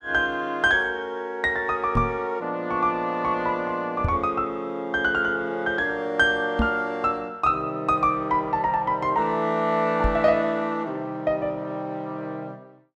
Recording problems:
knock on the microphone; 4 times, first at 2 s; peak +4 dB vs average level

